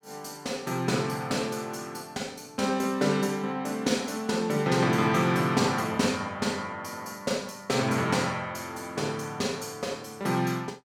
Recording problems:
none

